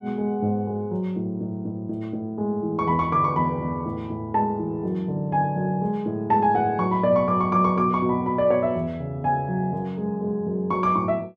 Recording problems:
none

